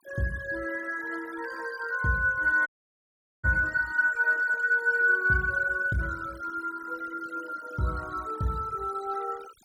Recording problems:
denoising artefacts; signal-to-artefact ratio 21 dB
audio cutting out; at 2.5 s for 1 s

